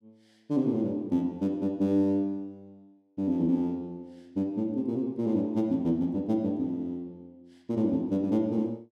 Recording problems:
none

